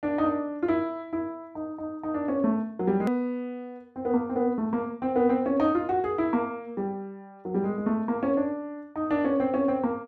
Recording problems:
edit click; at 3 s

